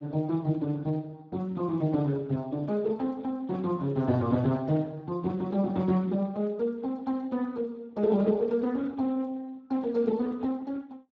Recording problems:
lossy codec; Speex, log-spectral distance 2 dB

